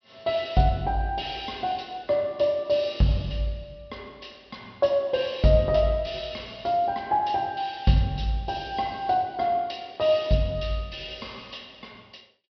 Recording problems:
treble missing; nothing above 5.5 kHz

